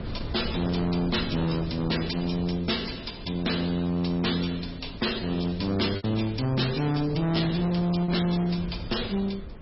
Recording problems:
lossy compression; MP3, log-spectral distance 7 dB, nothing above 5.5 kHz
distorted audio; hard clipping, uneven, signal-to-distortion ratio 6 dB
wind on the microphone; below 280 Hz, SNR 12 dB
packet loss; 1.3% of the sound replaced, filled with repeated pitch periods

